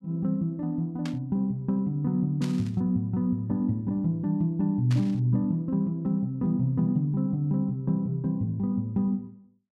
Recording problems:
burst of static; at 1 s, at 2.5 s and at 5 s; peak -9 dB vs average level

